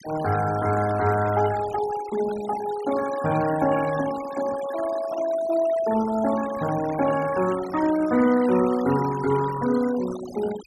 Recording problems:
noise reduction artefacts; signal-to-artefact ratio 14 dB

